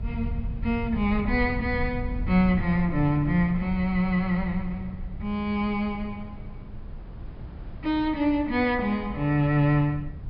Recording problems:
low-pass filter; nothing above 5.5 kHz
rumble; below 100 Hz, SNR 11 dB
wind noise; below 310 Hz, SNR 21 dB

